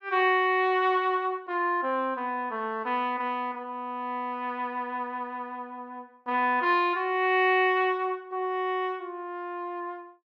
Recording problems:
none

